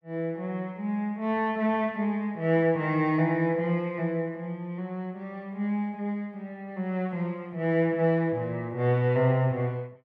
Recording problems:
none

